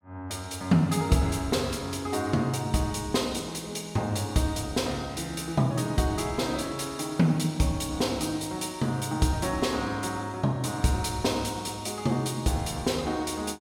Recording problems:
none

